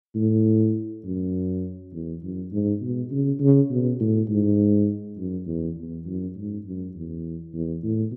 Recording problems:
none

